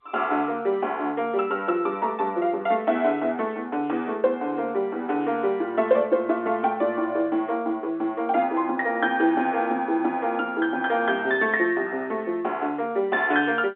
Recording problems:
phone line; 260 Hz to 3.8 kHz, G.711

